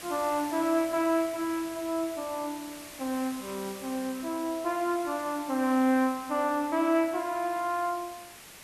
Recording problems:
background hiss; slope -1 dB per octave, SNR 15 dB

